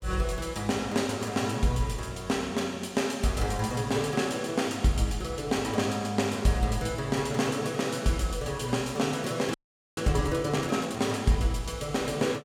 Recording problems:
audio freezing; at 9.5 s

